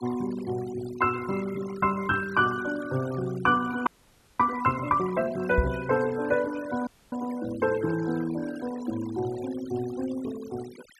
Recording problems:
noise reduction artefacts; signal-to-artefact ratio 17 dB
frozen audio; at 4 s for 0.5 s and at 7 s
microphone thump; at 5.5 s; peak +7 dB vs average level

